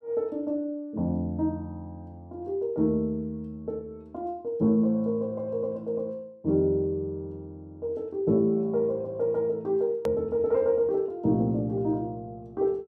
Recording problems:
edit click; at 10 s

